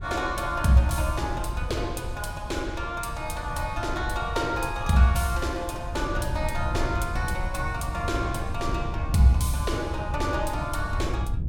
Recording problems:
wind on the microphone; below 110 Hz, SNR 6 dB

